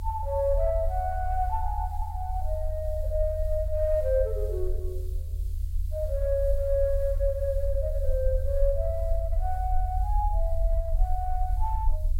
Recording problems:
background hiss; SNR 27 dB
rumble; below 76 Hz, SNR 1 dB

